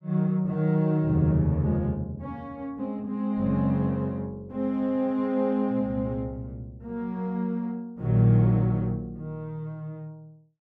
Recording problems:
none

